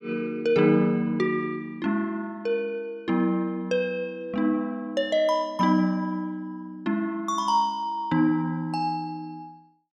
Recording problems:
none

